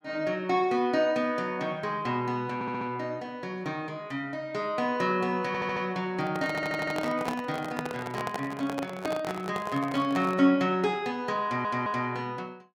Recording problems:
audio stuttering; 4 times, first at 2.5 s
handling noise; from 6 to 10 s; peak 0 dB vs average level

